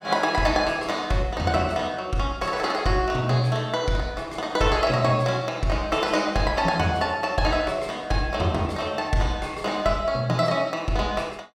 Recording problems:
none

